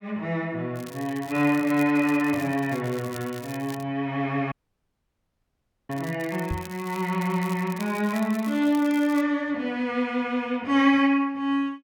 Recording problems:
crackling; from 1 to 4 s and from 6 to 9 s; loose cable, SNR 19 dB
dropout; at 4.5 s for 1.5 s
microphone bump; at 6.5 s; peak -1 dB vs average level

